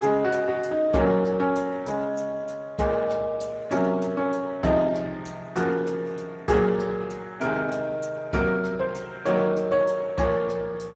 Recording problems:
lossy compression; Speex, log-spectral distance 3 dB

